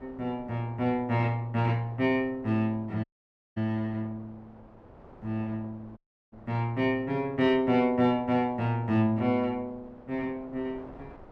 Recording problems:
wind noise; below 770 Hz, SNR 23 dB
dropout; at 3 s for 0.5 s and at 6 s

